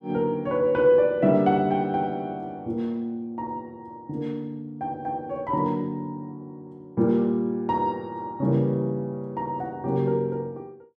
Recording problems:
none

